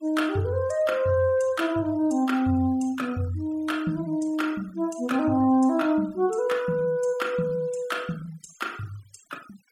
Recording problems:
denoising artefacts; signal-to-artefact ratio 25 dB

